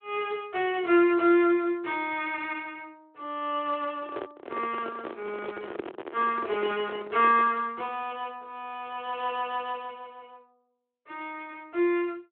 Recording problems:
telephone audio; 280 Hz to 3.4 kHz, Speex
microphone handling noise; from 4 to 7.5 s; peak -1 dB vs average level

